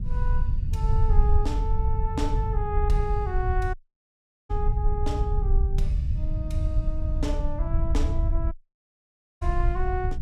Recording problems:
low-frequency rumble; below 72 Hz, SNR -6 dB
dropout; at 3.5 s for 1 s and at 8.5 s for 1 s

